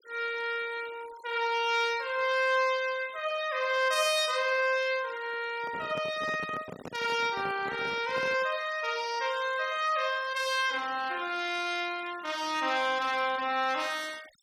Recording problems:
noise reduction artefacts; signal-to-artefact ratio 20 dB
handling noise; from 5.5 to 8.5 s; peak -8 dB vs average level

